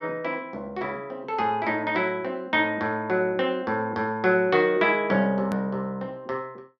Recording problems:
hard cut with a click; at 5.5 s

